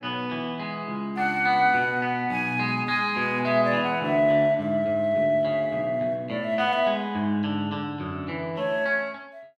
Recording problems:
none

